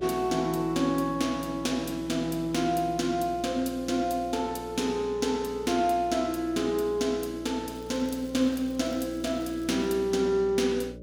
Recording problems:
hum; 60 Hz, harmonics up to 600 Hz, SNR 17 dB
crackle; from 7.5 to 10 s; loose cable, SNR 27 dB

